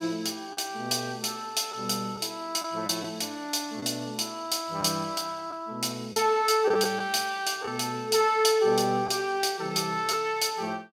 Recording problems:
packet loss; 2% of the sound replaced, filled with the last packet

